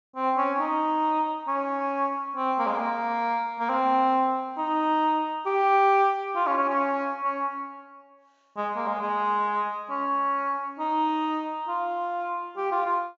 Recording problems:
treble missing; nothing above 8 kHz

